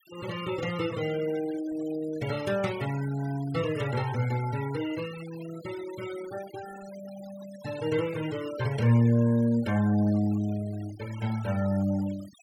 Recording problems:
noise reduction artefacts; signal-to-artefact ratio 17 dB

